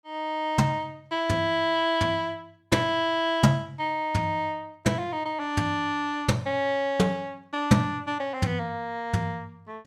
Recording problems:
none

